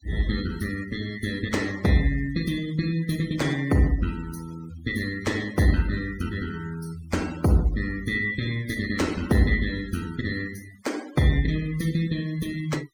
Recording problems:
noise reduction artefacts; signal-to-artefact ratio 17 dB

